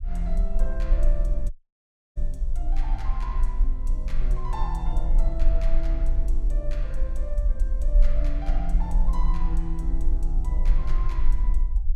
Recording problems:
rumble; below 40 Hz, strongest tone 20 Hz, SNR -9 dB
dropout; at 1.5 s for 0.5 s

